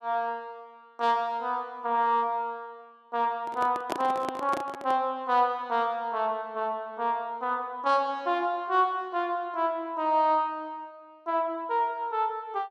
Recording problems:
microphone handling noise; from 3.5 to 5 s; peak +2 dB vs average level

